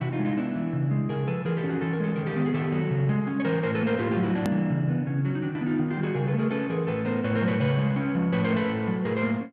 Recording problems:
click at an edit; at 4.5 s

